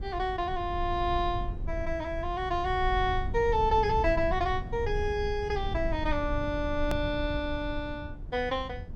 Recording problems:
rumble; below 86 Hz, SNR 7 dB
click at an edit; at 7 s

